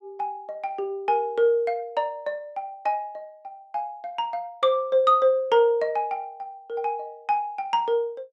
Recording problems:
none

